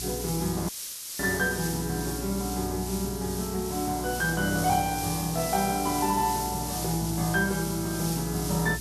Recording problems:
hum; 60 Hz, harmonics up to 360 Hz, SNR 12 dB
background hiss; SNR 6 dB
audio cutting out; at 0.5 s for 0.5 s

